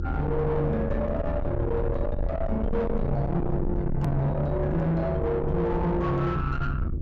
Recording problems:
low-pass filter; nothing above 8 kHz
distortion; soft clipping, signal-to-distortion ratio 7 dB
mains hum; 50 Hz, harmonics up to 400 Hz, SNR 9 dB
low-frequency rumble; below 220 Hz, SNR 4 dB
hard cut with a click; at 4 s

